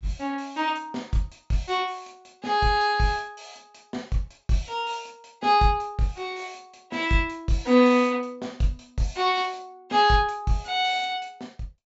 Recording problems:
low-pass filter; nothing above 8 kHz

